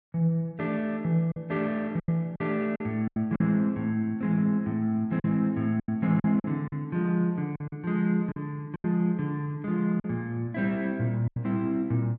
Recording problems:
lost packets; 7% of the sound replaced, filled with silence

